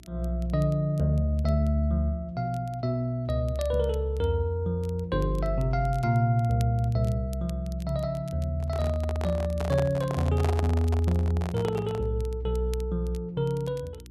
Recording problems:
hum; 60 Hz, harmonics up to 360 Hz, SNR 21 dB
crackling; vinyl, SNR 27 dB
handling noise; from 8.5 to 12 s; peak -2 dB vs average level

